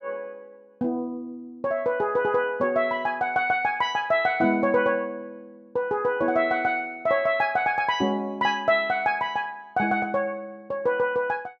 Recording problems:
none

